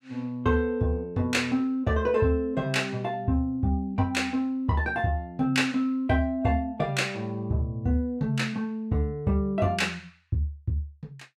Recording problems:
none

